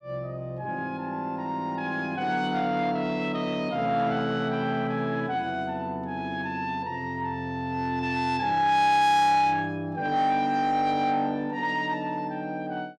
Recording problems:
distortion; soft clipping, signal-to-distortion ratio 11 dB

